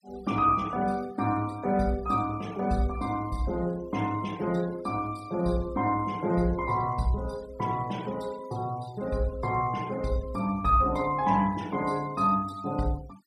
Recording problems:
denoising artefacts; signal-to-artefact ratio 22 dB

